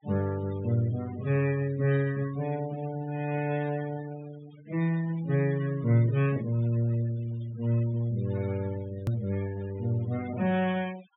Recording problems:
treble missing; nothing above 4 kHz
noise reduction artefacts; signal-to-artefact ratio 19 dB
hard cut with a click; at 9 s

